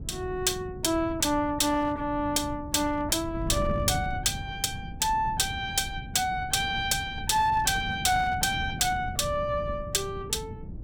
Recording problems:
distorted audio; hard clipping, uneven, signal-to-distortion ratio 12 dB
wind on the microphone; below 180 Hz, SNR 11 dB

